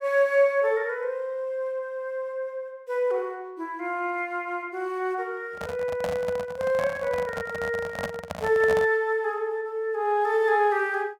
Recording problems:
handling noise; from 5.5 to 9 s; peak -1 dB vs average level

